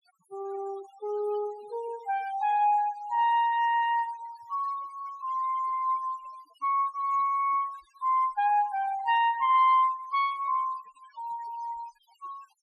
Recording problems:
noise reduction artefacts; signal-to-artefact ratio 22 dB

